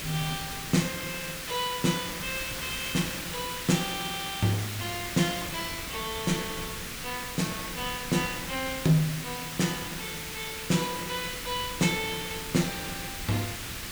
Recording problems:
background hiss; slope 0 dB per octave, SNR 4 dB
wind on the microphone; below 210 Hz, SNR 17 dB

